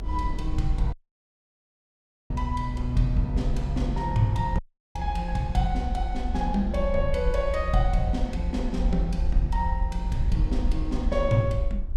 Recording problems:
low-frequency rumble; below 64 Hz, SNR 2 dB
wind on the microphone; below 230 Hz, SNR 13 dB
dropout; at 1 s for 1.5 s and at 4.5 s

